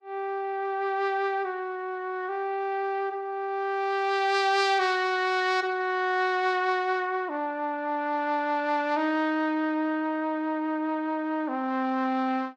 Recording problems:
lossy compression; Vorbis, log-spectral distance 2 dB

